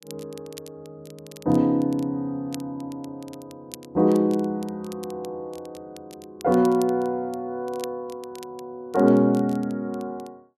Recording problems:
crackling; vinyl, SNR 23 dB

